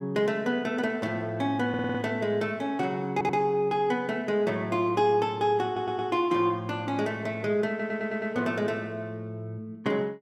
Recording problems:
audio stuttering; 4 times, first at 1.5 s

